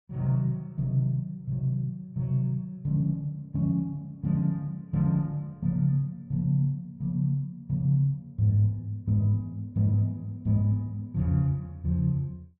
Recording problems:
none

